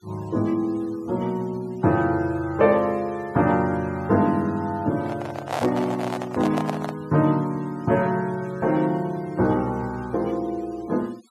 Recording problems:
denoising artefacts; signal-to-artefact ratio 24 dB
handling noise; from 5 to 7 s; peak +1 dB vs average level

